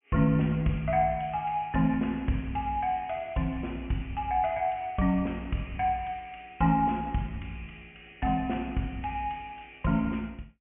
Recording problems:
treble missing; nothing above 3.1 kHz

